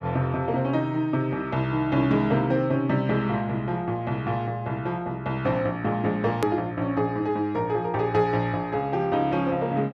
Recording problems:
click at an edit; at 6.5 s

